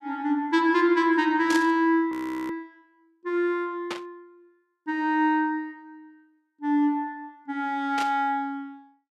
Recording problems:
static burst; at 1.5 s, at 4 s and at 8 s; peak -3 dB vs average level
frozen audio; at 2 s

